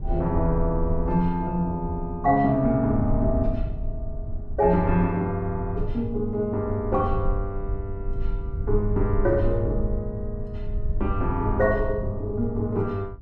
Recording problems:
low-frequency rumble; below 66 Hz, SNR 7 dB

